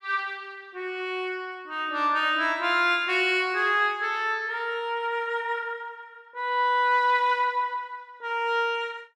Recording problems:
none

